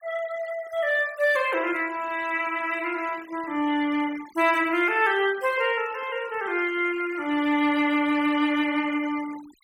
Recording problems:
denoising artefacts; signal-to-artefact ratio 21 dB

